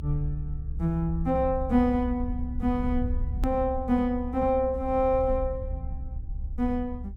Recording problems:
rumble; below 68 Hz, SNR 7 dB
click at an edit; at 3.5 s

